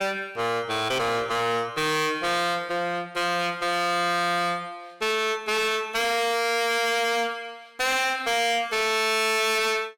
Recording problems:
distortion; hard clipping, uneven, signal-to-distortion ratio 6 dB

